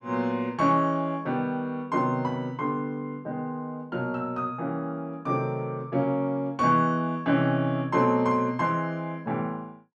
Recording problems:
none

